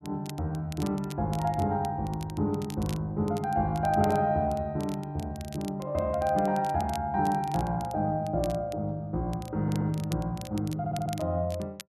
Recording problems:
crackle; vinyl, SNR 19 dB
stutter; at 9.5 s and at 11 s

